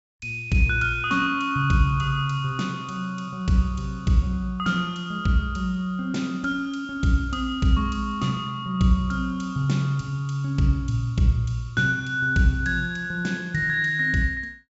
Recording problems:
treble cut off; nothing above 8 kHz

